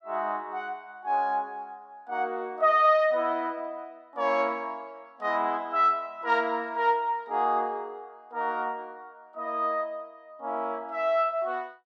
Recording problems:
none

